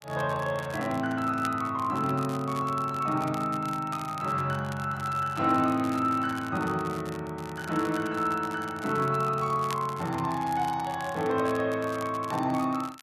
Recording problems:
crackling; vinyl, SNR 19 dB

